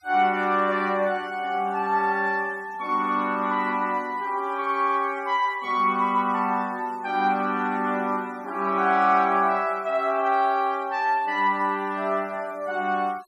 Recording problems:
denoising artefacts; signal-to-artefact ratio 26 dB

